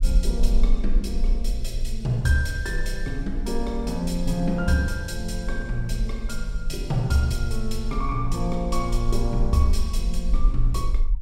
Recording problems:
low-frequency rumble; below 42 Hz, strongest tone 20 Hz, SNR 2 dB

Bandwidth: 16 kHz